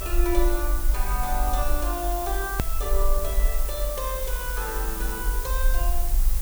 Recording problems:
background hiss; slope -2 dB per octave, SNR 1 dB
rumble; below 48 Hz, SNR -2 dB
click at an edit; at 2.5 s

